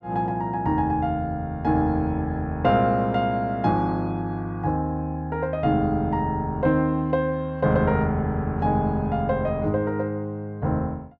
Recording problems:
none

